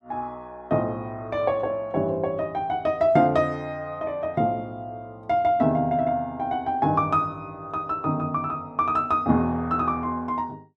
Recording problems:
none

